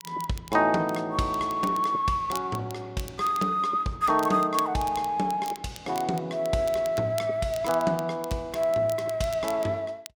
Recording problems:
crackling; vinyl, SNR 18 dB

